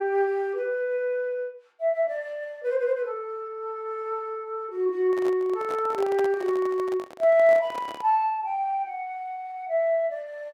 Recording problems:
handling noise; from 5 to 8 s; peak -5 dB vs average level

